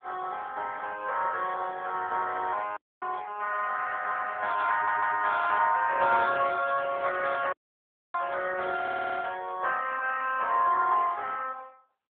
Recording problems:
telephone audio; 280 Hz to 3.6 kHz, AMR-NB
dropout; at 3 s and at 7.5 s for 0.5 s
stutter; at 4.5 s and at 9 s

